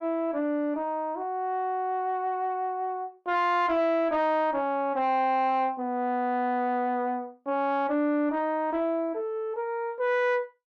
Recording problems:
distortion; soft clipping, signal-to-distortion ratio 12 dB

